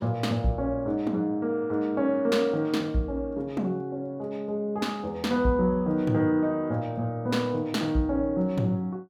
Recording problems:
none

